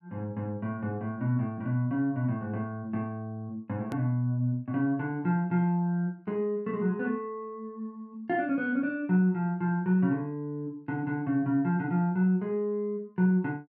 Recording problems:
edit click; at 4 s

